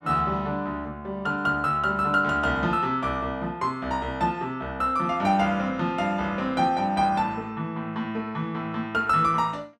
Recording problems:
none

